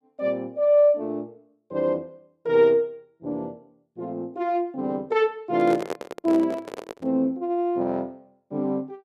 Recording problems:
microphone handling noise; from 5.5 to 7 s; peak -2 dB vs average level

